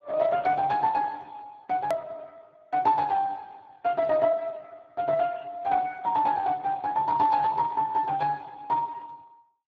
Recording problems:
codec artefacts; Speex, log-spectral distance 3 dB, nothing above 13.1 kHz
hard cut with a click; at 2 s

